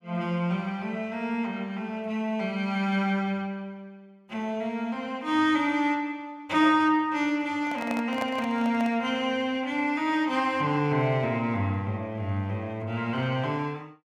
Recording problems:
microphone handling noise; from 7.5 to 9 s; peak -3 dB vs average level

